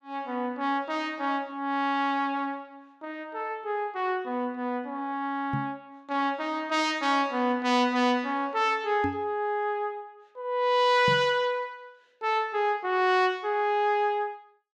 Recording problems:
microphone bump; at 5.5 s, at 9 s and at 11 s; peak -1 dB vs average level

